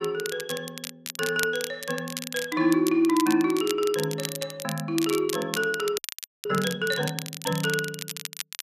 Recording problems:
crackle; vinyl, SNR 8 dB
frozen audio; at 6 s

